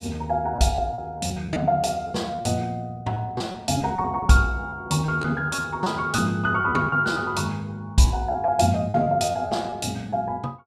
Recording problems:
packet loss; 9% of the sound replaced, filled with repeated pitch periods

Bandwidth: 14.5 kHz